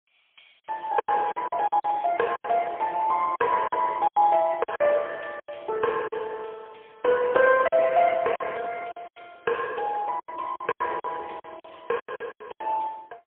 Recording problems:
telephone audio; 300 Hz to 3.3 kHz, AMR-NB, then MP3
packet loss; 12% of the sound replaced, filled with silence

